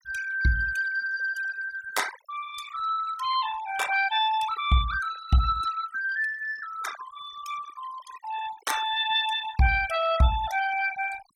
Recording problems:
denoising artefacts; signal-to-artefact ratio 13 dB

